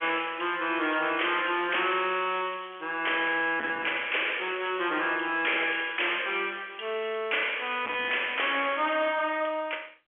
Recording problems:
phone line; 240 Hz to 3.4 kHz, G.711
distortion; hard clipping, uneven, signal-to-distortion ratio 9 dB
crackling; at 1 s, at 2 s and from 4 to 8.5 s; loose cable, SNR 25 dB

